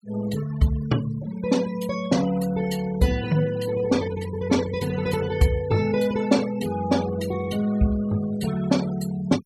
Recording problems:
noise reduction artefacts; signal-to-artefact ratio 16 dB

